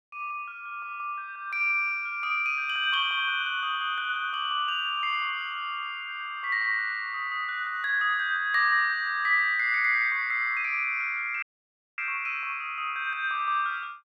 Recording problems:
dropout; at 11 s for 0.5 s

